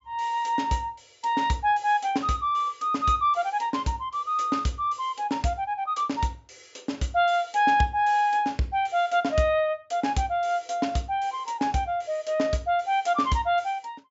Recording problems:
low-pass filter; nothing above 8 kHz

